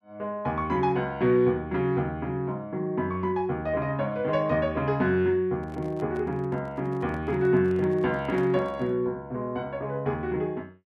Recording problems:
microphone handling noise; from 5.5 to 9 s; peak -11 dB vs average level

